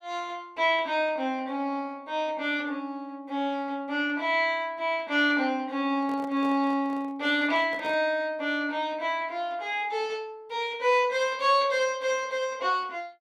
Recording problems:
microphone handling noise; from 6 to 8 s; peak -10 dB vs average level

